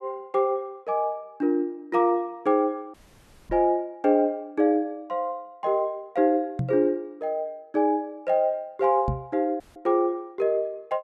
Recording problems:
dropout; at 3 s for 0.5 s and at 9.5 s
microphone thump; at 3.5 s, at 6.5 s and at 9 s; peak +1 dB vs average level

